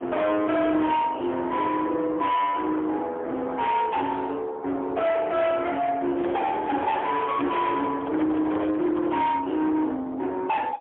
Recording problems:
telephone audio; 990 Hz to 3.6 kHz, AMR-NB, then MP3
distortion; soft clipping, signal-to-distortion ratio 8 dB
microphone handling noise; from 6 to 9.5 s; peak -2 dB vs average level

